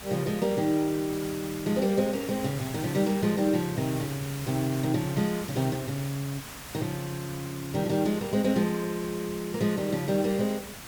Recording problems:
hiss; slope -1 dB per octave, SNR 12 dB

